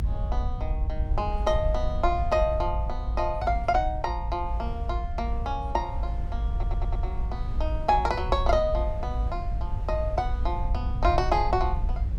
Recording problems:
rumble; below 64 Hz, SNR 2 dB
wind noise; below 140 Hz, SNR 13 dB
stutter; at 6.5 s

